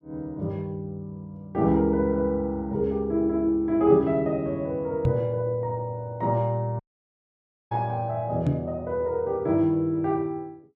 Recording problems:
microphone thump; at 5 s and at 8.5 s; peak +5 dB vs average level
dropout; at 7 s for 1 s

